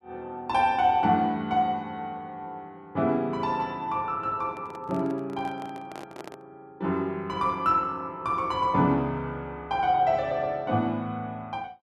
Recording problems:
handling noise; from 4.5 to 6.5 s; peak -9 dB vs average level

